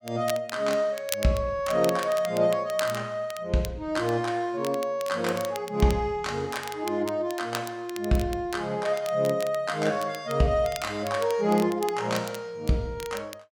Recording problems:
crackling; vinyl, SNR 15 dB

